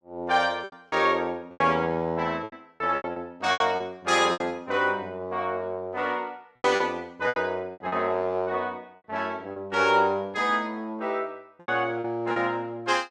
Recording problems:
lost packets; 9% of the sound replaced, filled with repeated pitch periods

